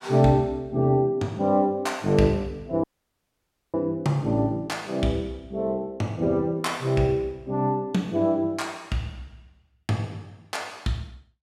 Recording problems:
dropout; at 3 s for 1 s

